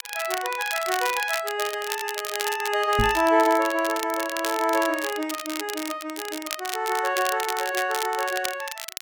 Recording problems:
lossy compression; Opus, log-spectral distance 3 dB, nothing above 17.7 kHz
crackling; vinyl, SNR 8 dB
microphone bump; at 3 s; peak +3 dB vs average level

